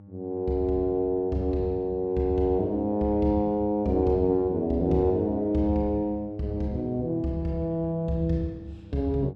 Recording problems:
mains hum; 50 Hz, harmonics up to 800 Hz, SNR 22 dB

